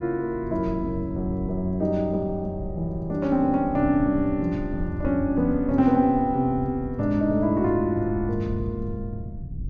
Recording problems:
rumble; below 130 Hz, SNR 13 dB

